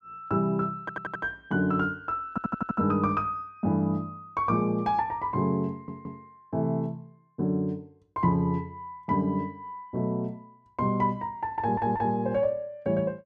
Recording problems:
stutter; 4 times, first at 1 s

